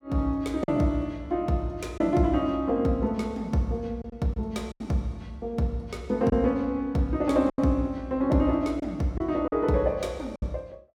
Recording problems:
lost packets; 4% of the sound replaced, filled with silence

